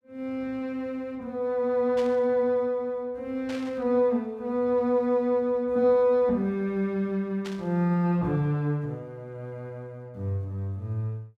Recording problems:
static burst; at 2 s, at 3.5 s and at 7.5 s; peak -9 dB vs average level

